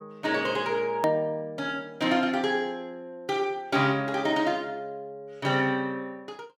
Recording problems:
edit click; at 1 s

